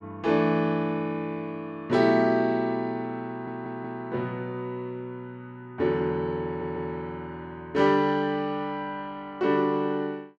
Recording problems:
stutter; at 3.5 s and at 6.5 s

